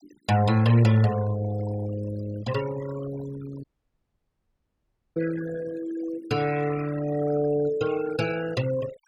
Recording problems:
noise reduction artefacts; signal-to-artefact ratio 14 dB
dropout; at 3.5 s for 1.5 s

